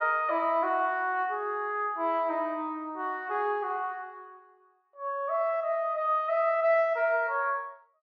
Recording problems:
none

